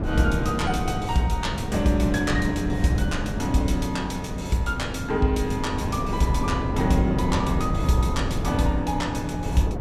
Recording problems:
wind noise; below 250 Hz, SNR 3 dB

